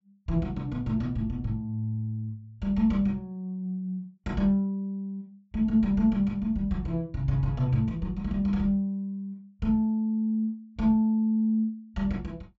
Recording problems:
treble missing; nothing above 8 kHz

